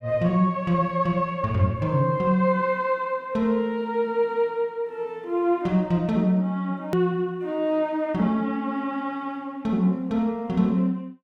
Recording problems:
click at an edit; at 7 s

